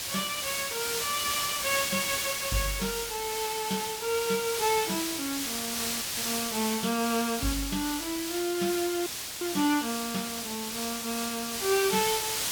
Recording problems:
background hiss; slope +1 dB per octave, SNR 0 dB
dropout; at 6 s and at 9 s

